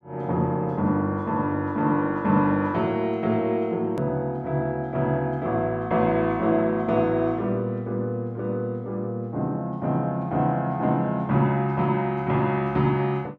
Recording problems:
hard cut with a click; at 4 s

